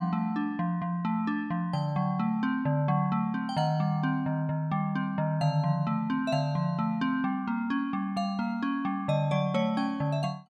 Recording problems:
none

